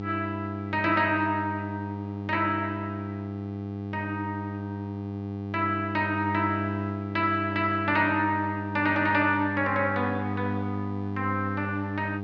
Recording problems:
electrical hum; 50 Hz, harmonics up to 1.2 kHz, SNR 6 dB

